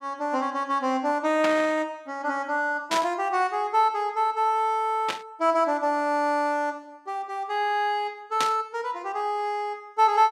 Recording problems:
burst of static; 4 times, first at 1.5 s; peak +2 dB vs average level

